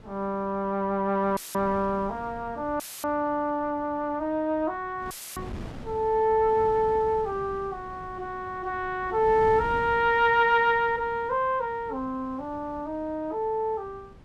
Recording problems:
wind on the microphone; below 370 Hz, SNR 18 dB
dropout; at 1.5 s, at 3 s and at 5 s; filled with static

